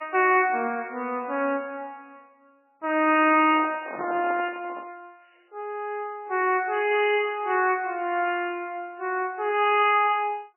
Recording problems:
codec artefacts; MP3, log-spectral distance 3 dB, nothing above 2.5 kHz
microphone handling noise; from 3.5 to 5 s; peak -6 dB vs average level

